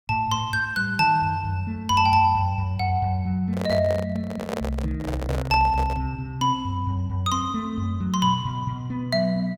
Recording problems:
handling noise; from 3.5 to 6 s; peak -1 dB vs average level

